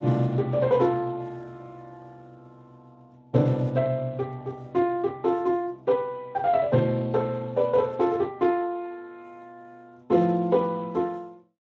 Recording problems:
lossy codec; Speex, log-spectral distance 2 dB

